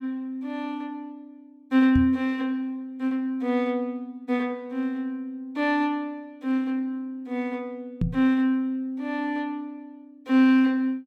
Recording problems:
knock on the microphone; at 2 s and at 8 s; peak +3 dB vs average level

